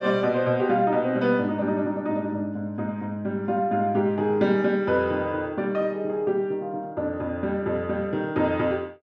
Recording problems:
none

